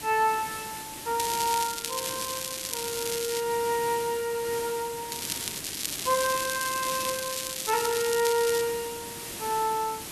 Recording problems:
hiss; SNR 8 dB
crackle; from 1 to 3.5 s, at 5 s and from 5.5 to 8.5 s; loose cable, SNR 3 dB

